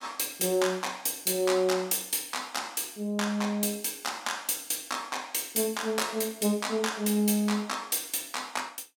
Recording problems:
none

